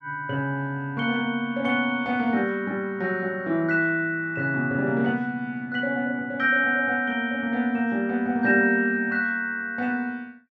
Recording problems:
none

